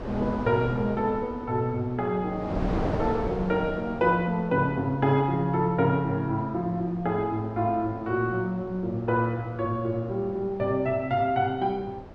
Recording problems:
wind noise; below 610 Hz, SNR 11 dB

